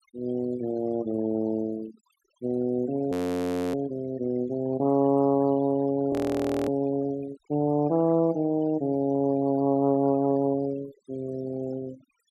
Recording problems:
noise reduction artefacts; signal-to-artefact ratio 21 dB
frozen audio; at 3 s for 0.5 s and at 6 s for 0.5 s

